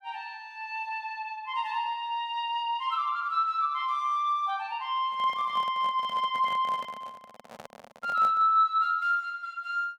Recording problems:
handling noise; from 5 to 8.5 s; peak -10 dB vs average level

